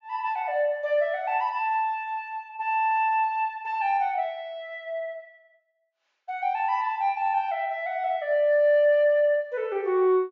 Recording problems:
treble missing; nothing above 7.3 kHz

